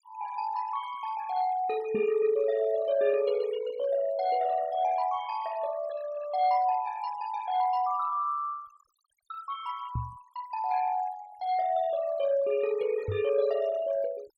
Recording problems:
denoising artefacts; signal-to-artefact ratio 17 dB
knock on the microphone; at 2 s, at 10 s and at 13 s; peak 0 dB vs average level

